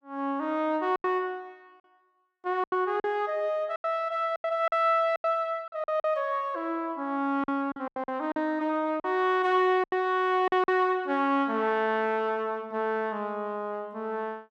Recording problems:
packet loss; 8% of the sound replaced, filled with silence

